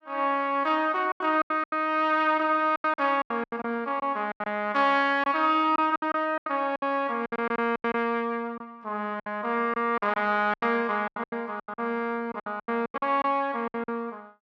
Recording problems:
lost packets; 14% of the sound replaced, filled with silence

